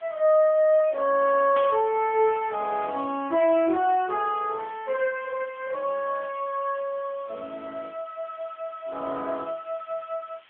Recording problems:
telephone audio; 220 Hz to 3.3 kHz, AMR-NB
hiss; SNR 27 dB
burst of static; at 1.5 s; peak -8 dB vs average level

